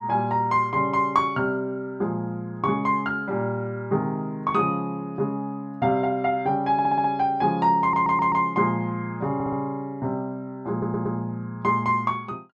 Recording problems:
audio stuttering; 4 times, first at 6.5 s

